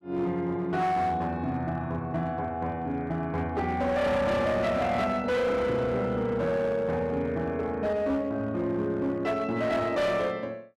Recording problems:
distortion; hard clipping, signal-to-distortion ratio 10 dB

